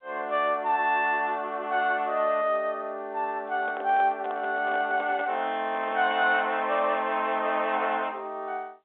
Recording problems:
phone line; 240 Hz to 3.7 kHz, G.711
handling noise; from 3.5 to 6.5 s; peak -8 dB vs average level

